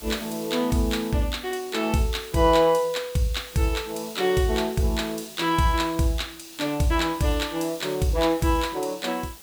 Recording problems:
hiss; slope -1 dB per octave, SNR 18 dB

